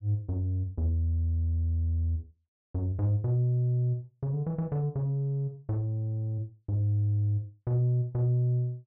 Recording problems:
none

